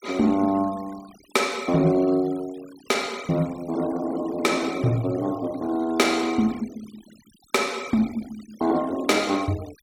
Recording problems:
noise reduction artefacts; signal-to-artefact ratio 20 dB

